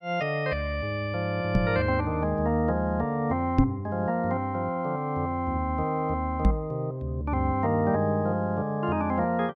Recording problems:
microphone thump; at 1.5 s, at 3.5 s and at 6.5 s; peak +9 dB vs average level

